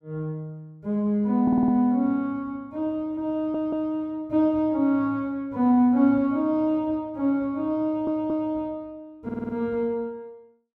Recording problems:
audio stuttering; 4 times, first at 1.5 s

